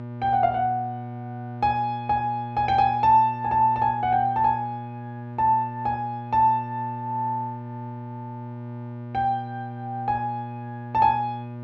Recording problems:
mains hum; 60 Hz, harmonics up to 1.2 kHz, SNR 12 dB

